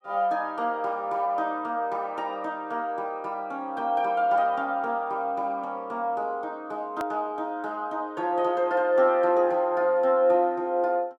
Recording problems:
click at an edit; at 7 s

